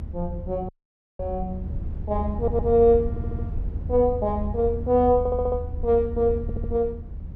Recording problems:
rumble; below 86 Hz, SNR 8 dB
dropout; at 0.5 s for 0.5 s
stutter; 4 times, first at 2.5 s

